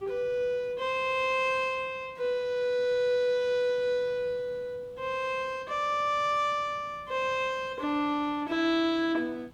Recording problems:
hiss; SNR 27 dB

